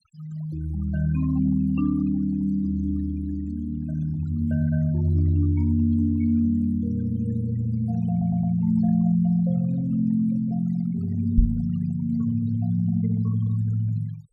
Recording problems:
denoising artefacts; signal-to-artefact ratio 22 dB
audio stuttering; at 8 s
microphone bump; at 11 s; peak +8 dB vs average level

